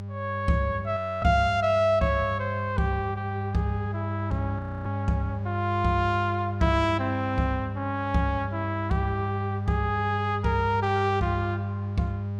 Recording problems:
hum; 50 Hz, harmonics up to 800 Hz, SNR 5 dB
audio freezing; at 1 s and at 4.5 s

